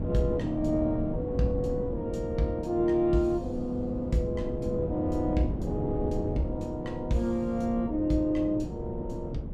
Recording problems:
wind on the microphone; below 260 Hz, SNR 6 dB

